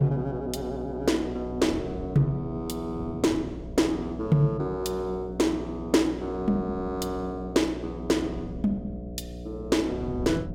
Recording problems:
hum; 60 Hz, harmonics up to 720 Hz, SNR 12 dB
wind on the microphone; below 210 Hz, SNR 16 dB

